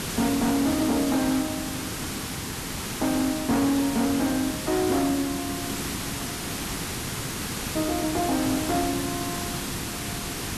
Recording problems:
distorted audio; hard clipping, signal-to-distortion ratio 10 dB
background hiss; SNR 4 dB

